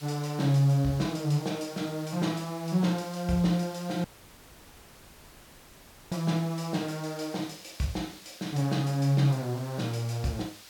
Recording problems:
background hiss; slope +1 dB per octave, SNR 18 dB
audio cutting out; at 4 s for 2 s

